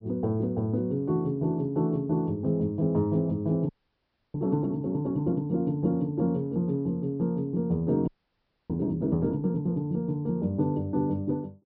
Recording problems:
treble missing; nothing above 5.5 kHz
frozen audio; at 3.5 s for 0.5 s and at 8 s for 0.5 s

